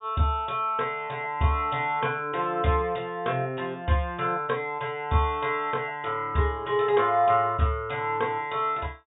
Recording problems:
low-pass filter; nothing above 3.7 kHz

